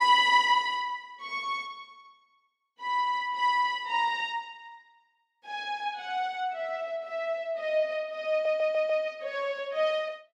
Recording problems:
audio stuttering; at 8.5 s

